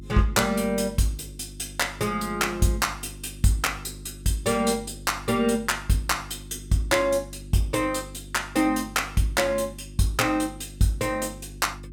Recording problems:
hum; 50 Hz, harmonics up to 350 Hz, SNR 17 dB

